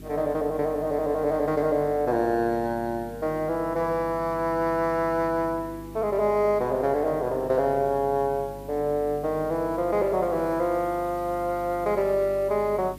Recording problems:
hum; 50 Hz, harmonics up to 400 Hz, SNR 17 dB
hiss; SNR 27 dB

